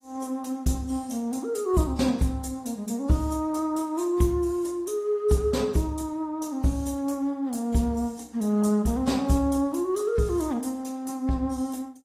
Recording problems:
lossy codec; AAC, log-spectral distance 2 dB

